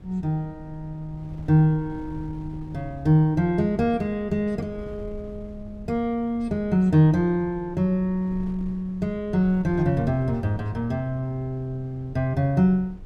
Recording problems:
wind noise; below 120 Hz, SNR 19 dB

